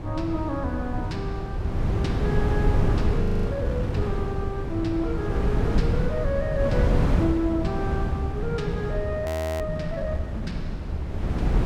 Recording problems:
wind noise; below 200 Hz, SNR -2 dB
frozen audio; at 3 s and at 9.5 s

